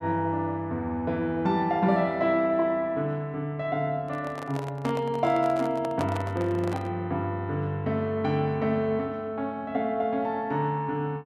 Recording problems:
microphone handling noise; from 4 to 7 s; peak -2 dB vs average level

